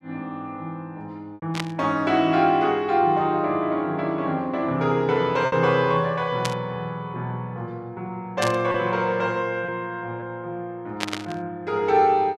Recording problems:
lost packets; 1.8% of the sound replaced, filled with repeated pitch periods
burst of static; 4 times, first at 1.5 s; peak +2 dB vs average level

